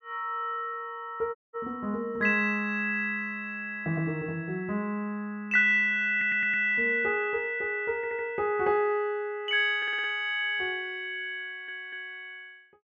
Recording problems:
dropout; at 1.5 s
audio stuttering; 4 times, first at 6 s

